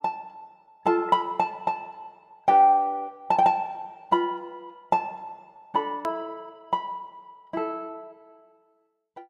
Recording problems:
edit click; at 6 s

